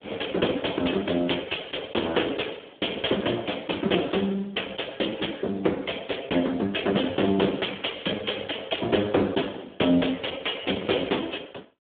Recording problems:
telephone audio; 240 Hz to 3.5 kHz, Speex
distortion; hard clipping, signal-to-distortion ratio 17 dB

